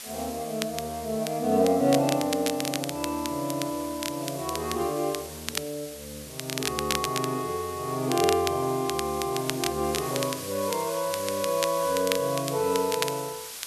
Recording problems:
hiss; slope +1 dB per octave, SNR 11 dB
crackle; vinyl, SNR 7 dB

